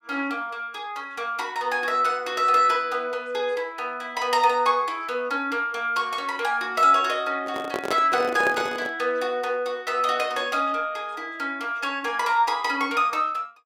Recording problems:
microphone handling noise; from 7.5 to 9 s; peak 0 dB vs average level

